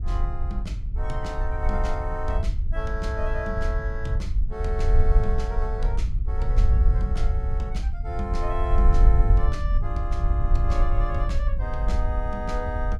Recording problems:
wind noise; below 60 Hz, SNR -7 dB

